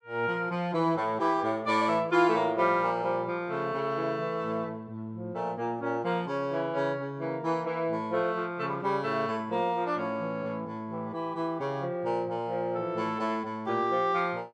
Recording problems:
none

